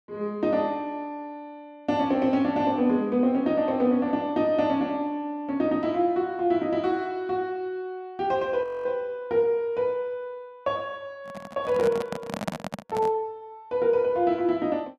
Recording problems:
frozen audio; at 8.5 s
handling noise; from 11 to 13 s; peak +1 dB vs average level

